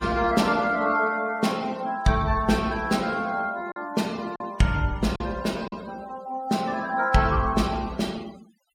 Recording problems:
noise reduction artefacts; signal-to-artefact ratio 21 dB
packet loss; 1.9% of the sound replaced, filled with silence

